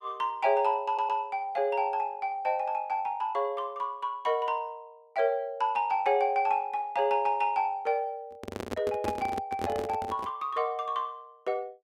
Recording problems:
audio stuttering; at 1 s
microphone handling noise; from 8.5 to 10 s; peak 0 dB vs average level

